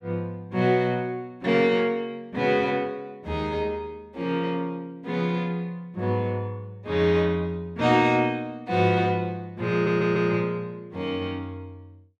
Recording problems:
stutter; at 9.5 s

